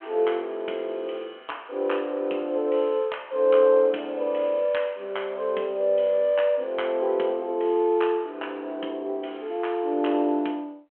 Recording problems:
telephone audio; 240 Hz to 3.3 kHz, G.726

